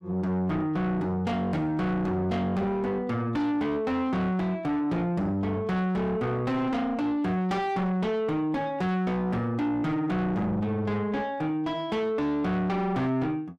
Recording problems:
distortion; soft clipping, signal-to-distortion ratio 8 dB

